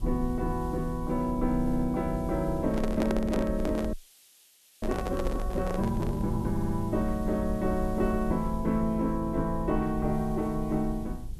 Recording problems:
background hiss; SNR 25 dB
low-frequency rumble; below 70 Hz, SNR 8 dB
audio stuttering; at 1.5 s and at 6.5 s
microphone handling noise; from 2.5 to 6.5 s; peak +2 dB vs average level
audio freezing; at 4 s for 1 s

